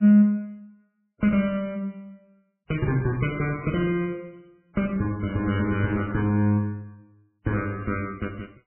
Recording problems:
lossy codec; MP3, log-spectral distance 3 dB, nothing above 2.5 kHz

